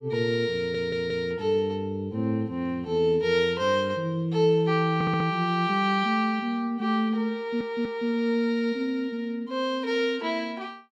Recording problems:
audio stuttering; at 0.5 s, at 5 s and at 7.5 s

